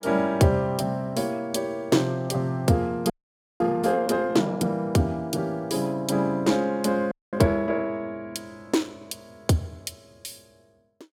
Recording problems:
frozen audio; at 3 s for 0.5 s and at 7 s

